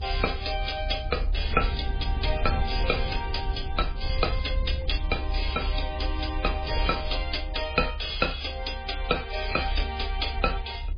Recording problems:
lossy codec; MP3, log-spectral distance 7 dB, nothing above 5 kHz
low-frequency rumble; below 68 Hz, strongest tone 38 Hz, SNR 3 dB

